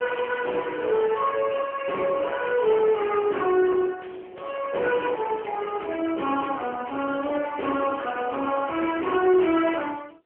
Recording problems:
phone line; 280 Hz to 3.3 kHz, AMR-NB
distorted audio; soft clipping, signal-to-distortion ratio 13 dB

